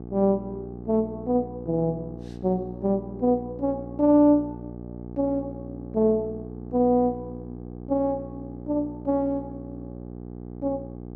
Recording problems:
hum; 60 Hz, harmonics up to 900 Hz, SNR 13 dB

